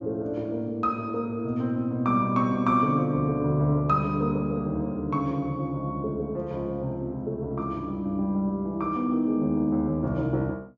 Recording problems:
treble missing; nothing above 8 kHz

